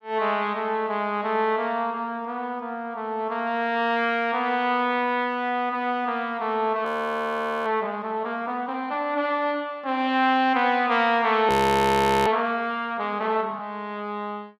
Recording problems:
audio freezing; at 7 s for 1 s and at 11 s for 1 s

